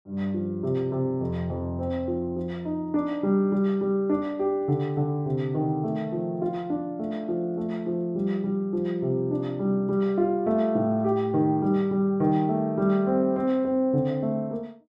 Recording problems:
none

